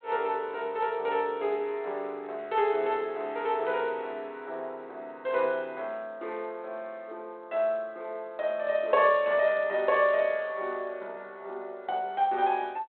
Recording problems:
telephone audio; 320 Hz to 3.6 kHz, G.726

